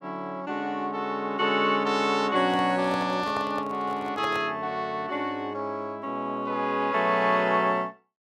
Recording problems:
handling noise; from 2.5 to 4.5 s; peak -5 dB vs average level

